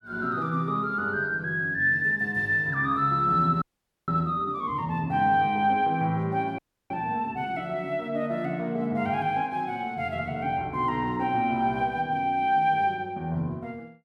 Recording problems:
audio freezing; at 3.5 s and at 6.5 s

